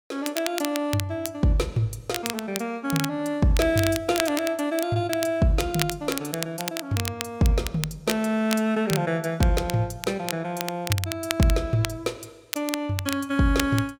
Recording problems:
crackle; vinyl, SNR 8 dB

